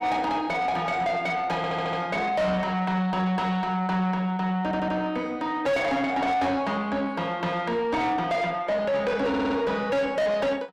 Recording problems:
distortion; soft clipping, signal-to-distortion ratio 6 dB
audio stuttering; at 1.5 s, at 4.5 s and at 9.5 s

